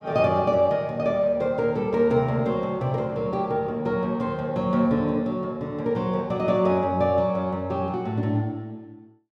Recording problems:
none

